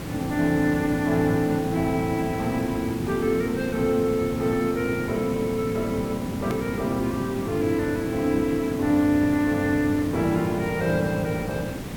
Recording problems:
hiss; SNR 8 dB
hard cut with a click; at 6.5 s

